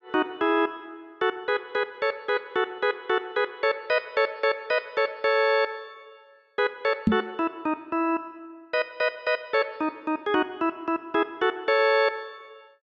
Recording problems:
knock on the microphone; at 7 s; peak +8 dB vs average level

